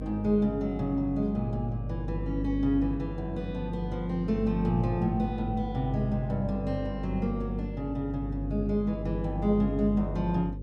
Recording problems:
hum; 50 Hz, harmonics up to 550 Hz, SNR 6 dB

